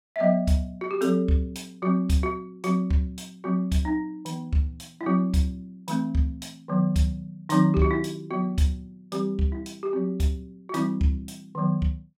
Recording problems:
none

